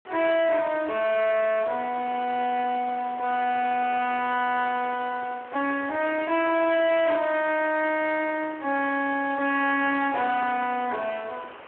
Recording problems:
phone line; 260 Hz to 3.3 kHz, Speex
distorted audio; hard clipping, uneven, signal-to-distortion ratio 7 dB
hiss; SNR 19 dB

